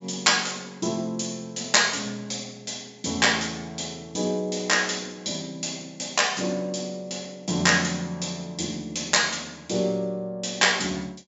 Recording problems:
treble cut off; nothing above 8 kHz

